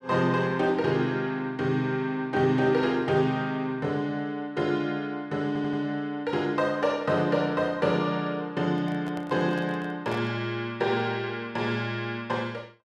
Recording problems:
stutter; at 5.5 s
microphone handling noise; from 8.5 to 10 s; peak -8 dB vs average level

